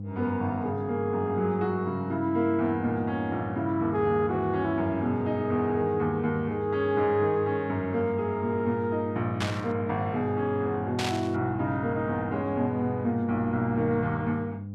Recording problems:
hum; 50 Hz, harmonics up to 500 Hz, SNR 10 dB
static burst; at 9.5 s and at 11 s; peak 0 dB vs average level

